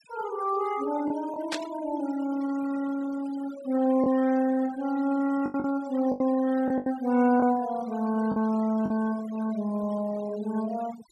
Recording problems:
noise reduction artefacts; signal-to-artefact ratio 17 dB
packet loss; 4% of the sound replaced, filled with the last packet
burst of static; at 1.5 s; peak 0 dB vs average level

